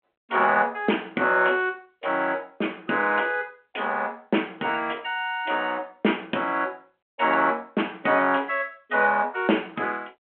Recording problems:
phone line; 220 Hz to 3.5 kHz, G.726

